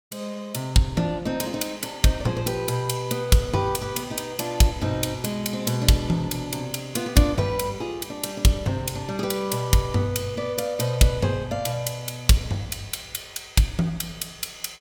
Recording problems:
none

